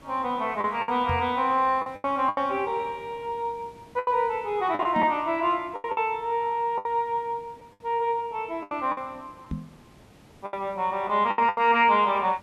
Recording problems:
hiss; slope -5 dB per octave, SNR 27 dB
packet loss; 9% of the sound replaced, filled with the last packet
microphone thump; at 1 s, at 5 s and at 9.5 s; peak -2 dB vs average level

